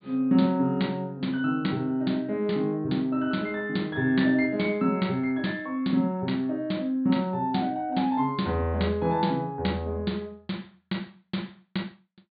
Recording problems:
low-pass filter; nothing above 4.6 kHz

